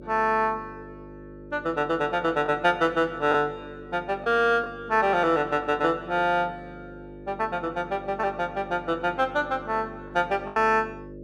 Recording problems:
electrical hum; 50 Hz, harmonics up to 600 Hz, SNR 17 dB
lost packets; 1.6% of the sound replaced, filled with the last packet

